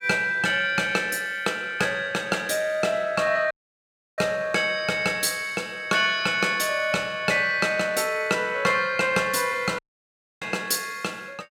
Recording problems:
audio cutting out; at 3.5 s for 0.5 s and at 10 s for 0.5 s

